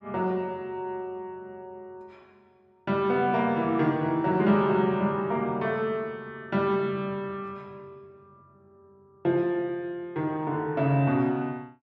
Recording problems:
none

